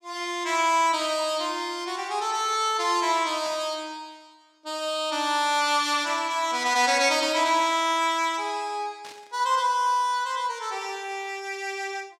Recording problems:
burst of static; 4 times, first at 1 s; peak -13 dB vs average level

